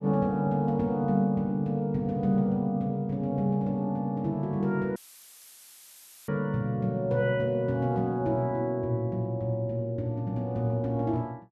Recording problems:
audio cutting out; at 5 s for 1.5 s; filled with static

